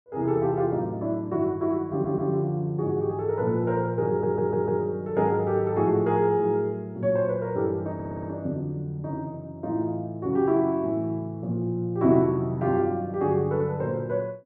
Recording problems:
stutter; at 2 s, at 4 s and at 8 s

